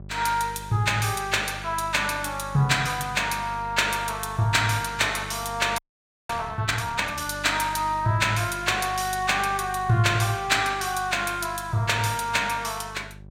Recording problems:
hum; 50 Hz, harmonics up to 750 Hz, SNR 17 dB
audio freezing; at 6 s for 0.5 s

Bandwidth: 16 kHz